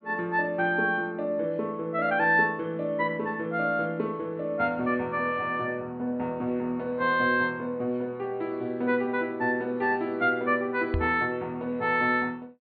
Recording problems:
treble cut off; nothing above 4.5 kHz
microphone bump; at 11 s; peak +2 dB vs average level

